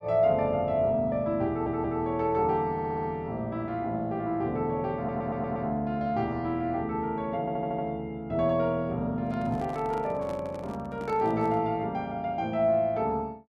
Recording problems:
stutter; 4 times, first at 1.5 s
handling noise; from 9 to 12 s; peak -9 dB vs average level

